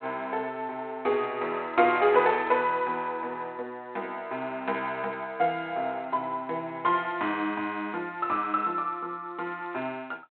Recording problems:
telephone audio; 220 Hz to 4 kHz, G.726

